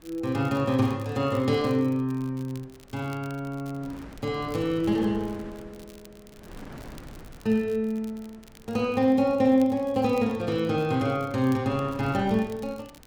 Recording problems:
wind noise; below 590 Hz, SNR 22 dB
crackling; vinyl, SNR 27 dB

